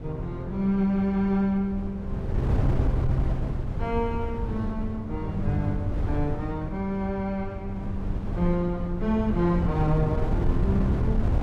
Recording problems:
wind on the microphone; below 130 Hz, SNR 2 dB

